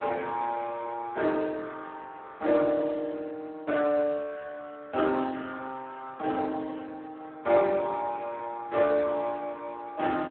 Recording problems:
phone line; 260 Hz to 3 kHz, Speex

